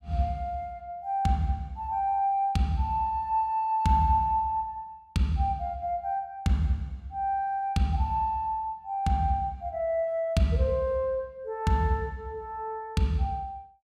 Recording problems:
none

